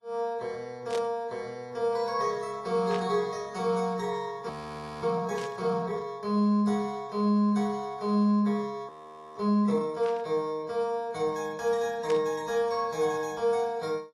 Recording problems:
lossy codec; AAC, log-spectral distance 2 dB, nothing above 10.4 kHz
static burst; 5 times, first at 1 s; peak -6 dB vs average level
frozen audio; at 4.5 s for 0.5 s and at 9 s

